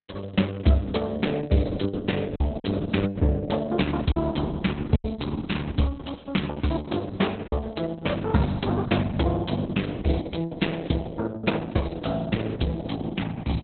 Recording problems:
codec artefacts; Opus, log-spectral distance 6 dB, nothing above 4 kHz
packet loss; 1.8% of the sound replaced, filled with silence

